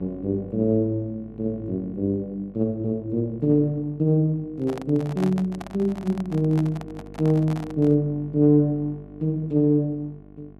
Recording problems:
hum; 50 Hz, harmonics up to 1.1 kHz, SNR 21 dB
microphone handling noise; from 4.5 to 8 s; peak -5 dB vs average level

